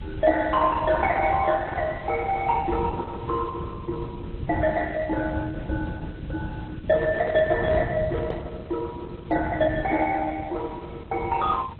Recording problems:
codec artefacts; Opus, then AAC, log-spectral distance 3 dB, nothing above 3.5 kHz
background hiss; SNR 29 dB
low-frequency rumble; below 120 Hz, SNR 7 dB
handling noise; from 7 to 8.5 s; peak -2 dB vs average level

